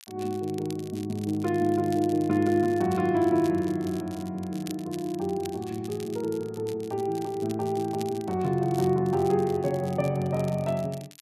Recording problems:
crackle; vinyl, SNR 20 dB

